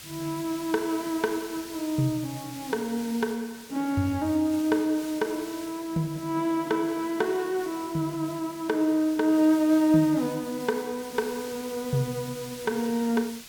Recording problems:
hiss; SNR 16 dB

